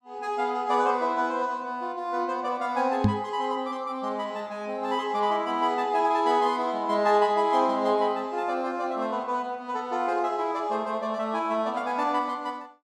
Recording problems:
microphone thump; at 3 s; peak +7 dB vs average level

